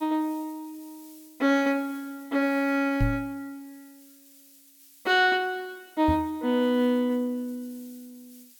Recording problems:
background hiss; slope +6 dB per octave, SNR 26 dB
microphone thump; at 3 s and at 6 s; peak +3 dB vs average level

